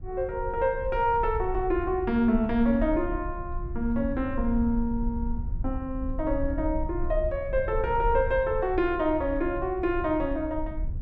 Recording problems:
rumble; below 66 Hz, SNR 9 dB

